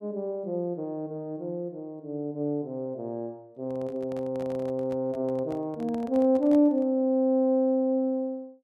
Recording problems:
handling noise; from 3.5 to 7 s; peak -10 dB vs average level

